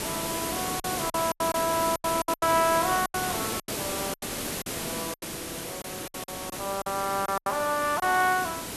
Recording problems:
hiss; slope -3 dB per octave, SNR 4 dB
packet loss; 12% of the sound replaced, filled with silence

